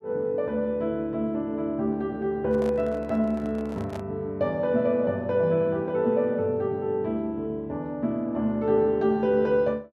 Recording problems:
microphone handling noise; from 2.5 to 4 s; peak -9 dB vs average level

